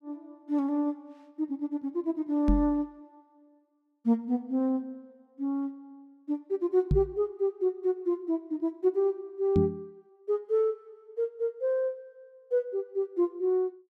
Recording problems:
microphone thump; at 2.5 s, at 7 s and at 9.5 s; peak +7 dB vs average level

